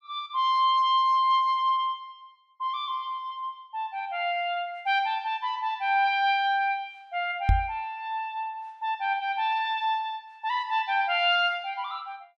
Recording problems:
knock on the microphone; at 7.5 s; peak +6 dB vs average level

